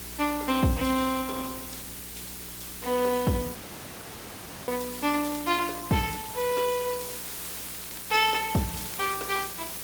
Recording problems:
lossy compression; Opus, log-spectral distance 9 dB
electrical hum; 60 Hz, harmonics up to 420 Hz, SNR 19 dB
background hiss; slope -1 dB per octave, SNR 9 dB
audio cutting out; at 3.5 s for 1 s
crackling; at 5 s and from 7.5 to 9 s; loose cable, SNR 20 dB

